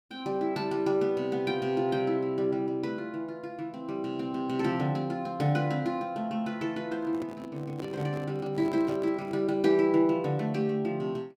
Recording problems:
handling noise; from 7 to 9.5 s; peak -8 dB vs average level

